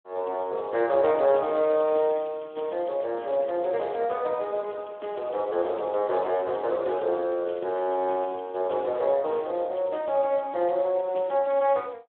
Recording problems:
phone line; 280 Hz to 3.5 kHz, Speex

